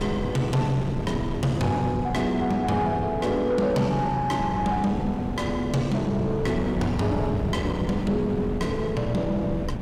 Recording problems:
distortion; soft clipping, signal-to-distortion ratio 11 dB
wind noise; below 300 Hz, SNR 6 dB

